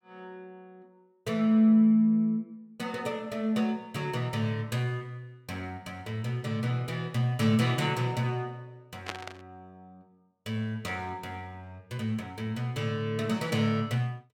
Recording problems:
burst of static; at 9 s; peak -2 dB vs average level

